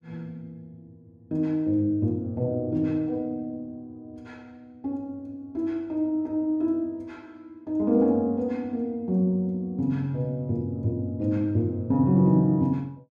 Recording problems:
none

